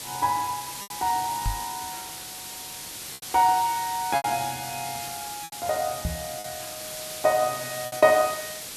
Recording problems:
background hiss; slope 0 dB per octave, SNR 8 dB
packet loss; 5% of the sound replaced, filled with repeated pitch periods
microphone bump; at 1.5 s and at 6 s; peak 0 dB vs average level

